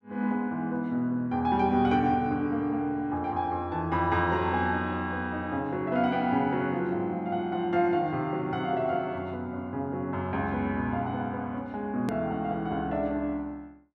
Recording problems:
edit click; at 12 s

